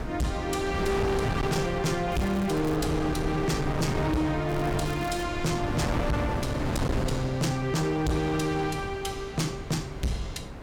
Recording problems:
distortion; hard clipping, signal-to-distortion ratio 6 dB
wind noise; below 490 Hz, SNR 5 dB
crackling; at 2 s and at 4.5 s; loose cable, SNR 19 dB

